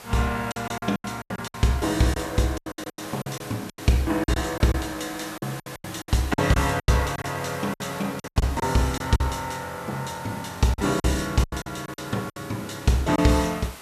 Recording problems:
hiss; slope -2 dB per octave, SNR 15 dB
packet loss; 14% of the sound replaced, filled with silence

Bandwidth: 14 kHz